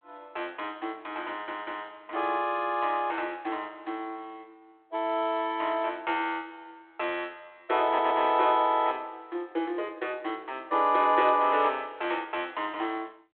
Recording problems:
telephone audio; 280 Hz to 3.5 kHz, G.726
audio stuttering; at 1.5 s and at 8 s

